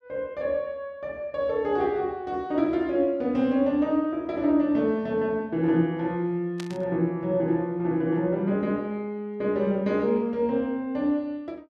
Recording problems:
burst of static; at 6.5 s; peak -9 dB vs average level

